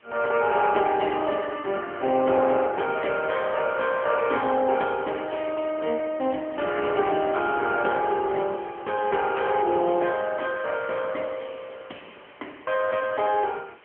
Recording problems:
telephone audio; 240 Hz to 3.2 kHz, AMR-NB
background hiss; SNR 27 dB

